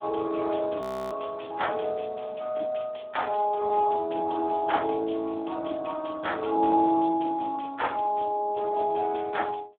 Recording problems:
telephone audio; 220 Hz to 3.5 kHz, Speex
frozen audio; at 1 s

